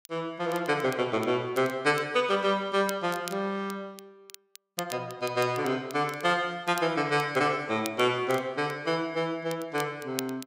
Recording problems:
crackle; vinyl, SNR 17 dB

